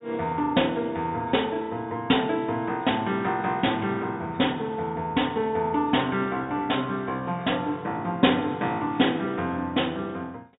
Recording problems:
treble missing; nothing above 4 kHz

